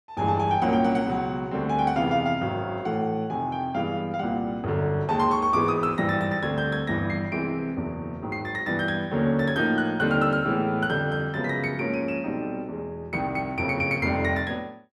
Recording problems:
none

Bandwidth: 13.5 kHz